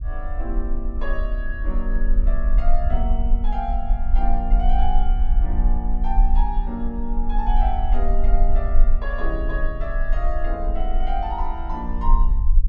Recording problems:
low-frequency rumble; below 38 Hz, strongest tone 20 Hz, SNR -6 dB

